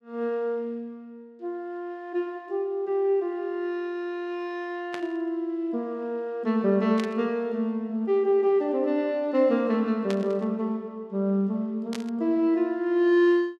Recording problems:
static burst; 4 times, first at 5 s; peak -6 dB vs average level

